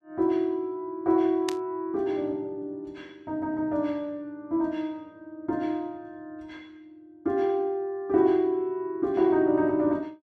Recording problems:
burst of static; at 1.5 s; peak -2 dB vs average level

